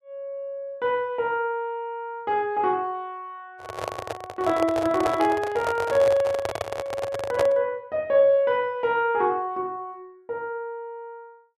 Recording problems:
handling noise; from 3.5 to 7.5 s; peak +2 dB vs average level

